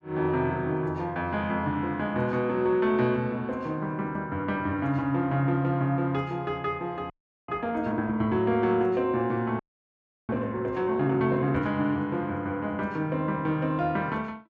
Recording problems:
frozen audio; at 7 s and at 9.5 s for 0.5 s

